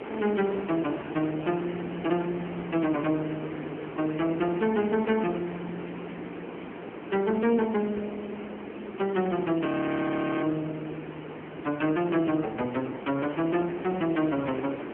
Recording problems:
phone line; 240 Hz to 3.3 kHz, AMR-NB
background hiss; SNR 10 dB
frozen audio; at 9.5 s for 1 s

